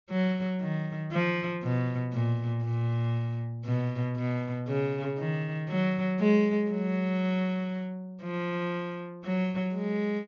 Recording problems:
low-pass filter; nothing above 7.1 kHz

